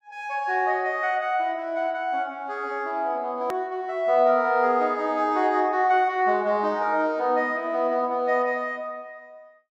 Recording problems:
hard cut with a click; at 3.5 s

